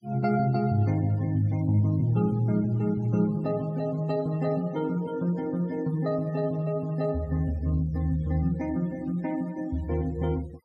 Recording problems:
noise reduction artefacts; signal-to-artefact ratio 24 dB

